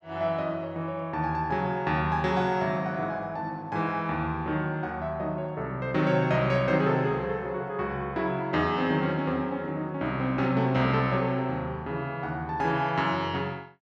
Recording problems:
none

